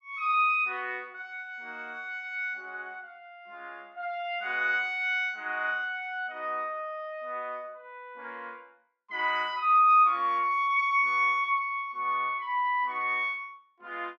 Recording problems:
none

